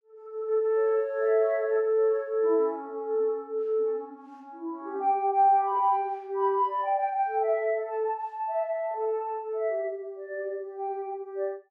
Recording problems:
none

